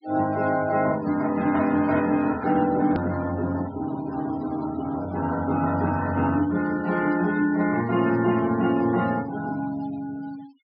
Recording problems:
treble missing; nothing above 5.5 kHz
denoising artefacts; signal-to-artefact ratio 19 dB
edit click; at 3 s

